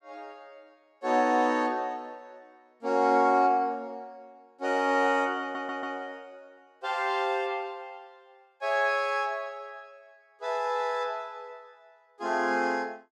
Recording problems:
audio stuttering; at 5.5 s

